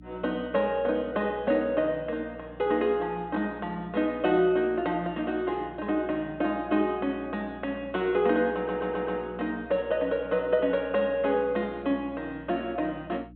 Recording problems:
treble missing; nothing above 4 kHz
hum; 60 Hz, harmonics up to 300 Hz, SNR 21 dB
audio stuttering; at 8.5 s

